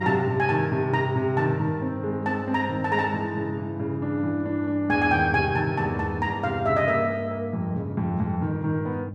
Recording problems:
hum; 50 Hz, harmonics up to 800 Hz, SNR 11 dB

